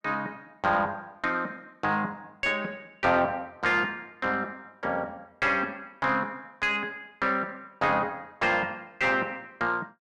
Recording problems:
distortion; soft clipping, signal-to-distortion ratio 11 dB

